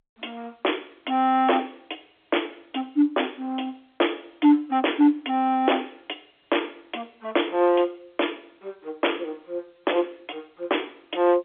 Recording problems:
telephone audio; 280 Hz to 3.5 kHz, G.711
distorted audio; hard clipping, signal-to-distortion ratio 9 dB

